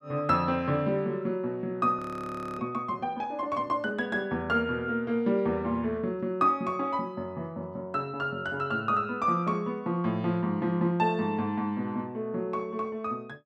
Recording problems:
audio freezing; at 2 s for 0.5 s

